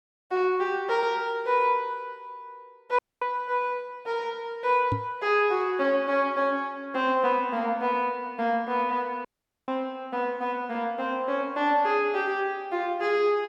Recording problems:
dropout; at 3 s and at 9.5 s
microphone bump; at 5 s; peak +1 dB vs average level

